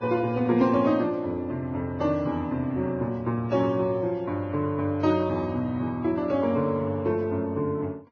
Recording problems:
lossy codec; Vorbis, log-spectral distance 2 dB, nothing above 6.3 kHz

